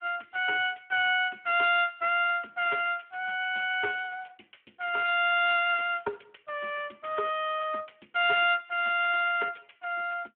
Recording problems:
telephone audio; 300 Hz to 3.4 kHz, Speex

